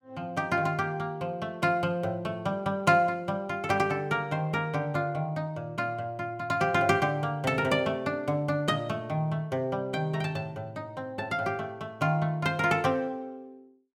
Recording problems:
none

